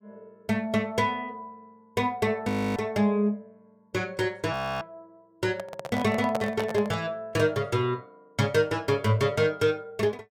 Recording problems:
audio freezing; at 2.5 s and at 4.5 s
handling noise; from 5.5 to 7 s; peak +1 dB vs average level

